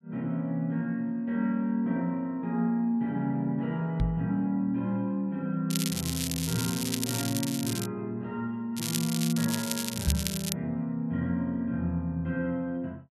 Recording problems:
microphone bump; at 4 s and at 10 s; peak +7 dB vs average level
crackle; from 5.5 to 8 s and from 9 to 11 s; loose cable, SNR 3 dB

